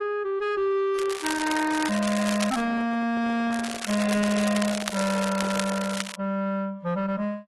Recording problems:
lossy codec; AAC, log-spectral distance 5 dB, nothing above 11.3 kHz
distorted audio; soft clipping, signal-to-distortion ratio 9 dB
crackle; from 1 to 2.5 s and from 3.5 to 6 s; loose cable, SNR 7 dB
handling noise; from 2.5 to 6 s; peak -6 dB vs average level

